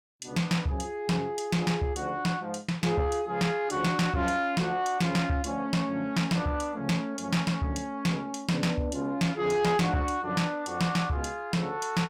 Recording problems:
distorted audio; soft clipping, signal-to-distortion ratio 12 dB

